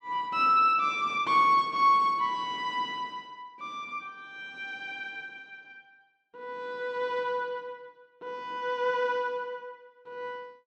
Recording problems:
none

